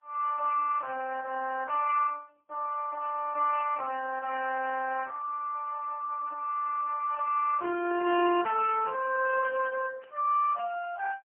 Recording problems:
phone line; 300 Hz to 3.1 kHz, AMR-NB, then MP3
static burst; at 3 s, at 8.5 s and at 10 s; peak -21 dB vs average level

